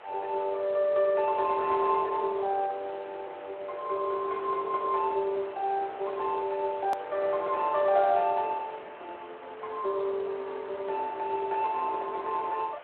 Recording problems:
telephone audio; 320 Hz to 3.6 kHz, Speex
background hiss; SNR 18 dB
hard cut with a click; at 7 s

